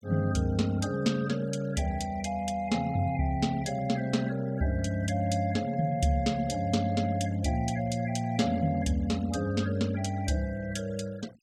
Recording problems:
denoising artefacts; signal-to-artefact ratio 23 dB

